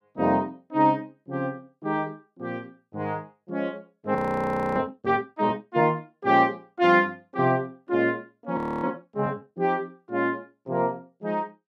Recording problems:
frozen audio; at 4 s for 0.5 s and at 8.5 s

